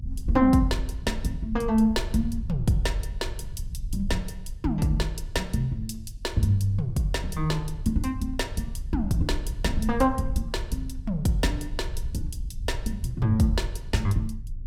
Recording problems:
low-frequency rumble; below 66 Hz, strongest tone 28 Hz, SNR 9 dB

